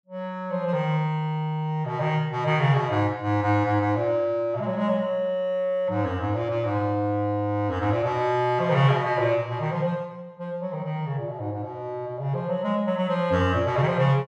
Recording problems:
none

